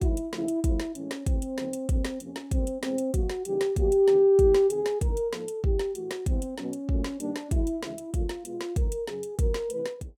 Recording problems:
none

